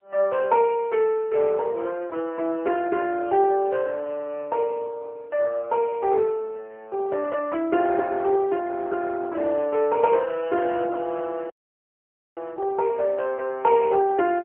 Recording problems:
phone line; 300 Hz to 3.2 kHz, AMR-NB
dropout; at 12 s for 1 s

